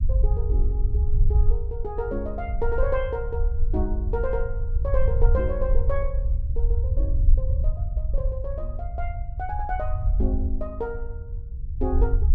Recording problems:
rumble; below 62 Hz, SNR -5 dB

